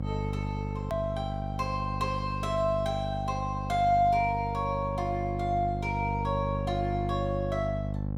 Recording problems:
electrical hum; 50 Hz, harmonics up to 800 Hz, SNR 4 dB
hard cut with a click; at 1 s

